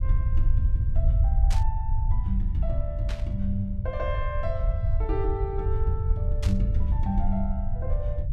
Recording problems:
low-frequency rumble; below 76 Hz, SNR -5 dB
static burst; at 1.5 s, at 3 s and at 6.5 s; peak -1 dB vs average level

